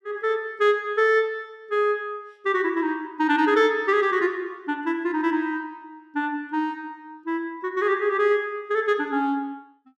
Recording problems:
none

